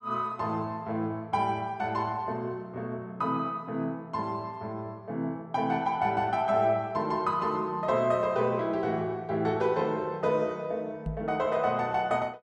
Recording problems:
microphone bump; at 11 s; peak -2 dB vs average level

